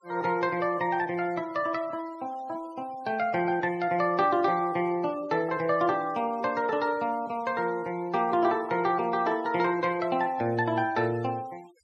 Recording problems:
noise reduction artefacts; signal-to-artefact ratio 24 dB

